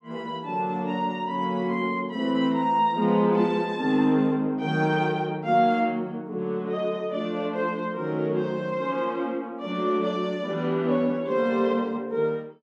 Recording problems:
none

